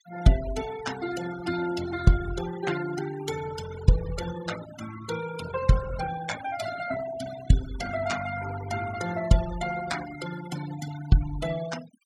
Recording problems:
denoising artefacts; signal-to-artefact ratio 11 dB

